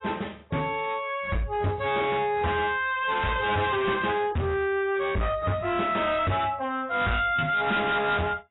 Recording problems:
lossy codec; AAC, log-spectral distance 4 dB, nothing above 3.8 kHz
distortion; hard clipping, signal-to-distortion ratio 7 dB

